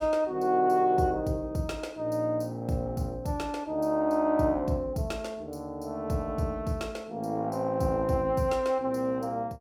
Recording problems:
none

